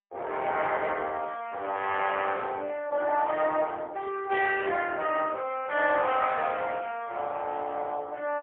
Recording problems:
telephone audio; 340 Hz to 3.5 kHz, AMR-NB, then MP3

